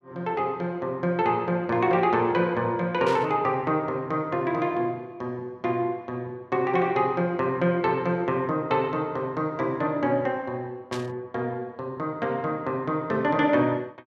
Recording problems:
burst of static; at 3 s and at 11 s; peak -6 dB vs average level

